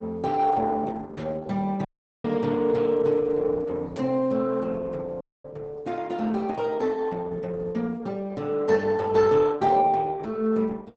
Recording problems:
lossy codec; Opus, log-spectral distance 3 dB
audio cutting out; at 2 s and at 5 s

